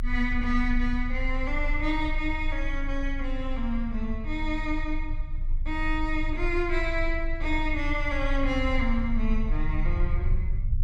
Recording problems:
rumble; below 40 Hz, strongest tone 24 Hz, SNR 3 dB

